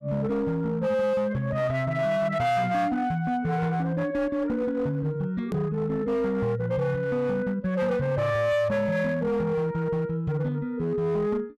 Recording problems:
distorted audio; hard clipping, signal-to-distortion ratio 12 dB
hard cut with a click; at 5.5 s

